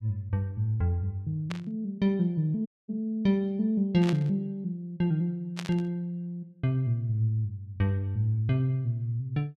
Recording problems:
burst of static; at 1.5 s, at 4 s and at 5.5 s; peak -3 dB vs average level
dropout; at 2.5 s

